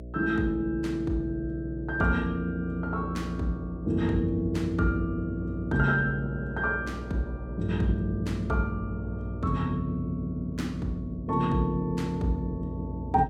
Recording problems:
hum; 60 Hz, harmonics up to 660 Hz, SNR 9 dB

